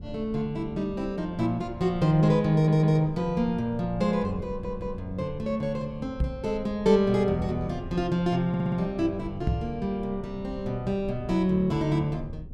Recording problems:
rumble; below 120 Hz, SNR 17 dB
audio stuttering; at 2.5 s, at 4.5 s and at 8.5 s
microphone bump; at 6 s and at 9.5 s; peak +3 dB vs average level

